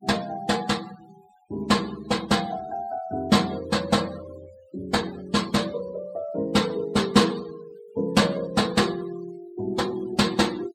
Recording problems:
noise reduction artefacts; signal-to-artefact ratio 19 dB

